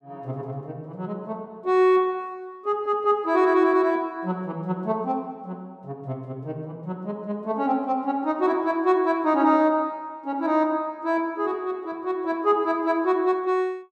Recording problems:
none

